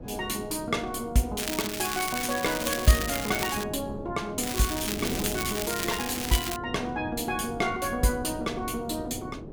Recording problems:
wind on the microphone; below 380 Hz, SNR 10 dB
crackle; from 1.5 to 3.5 s and from 4.5 to 6.5 s; loose cable, SNR 3 dB

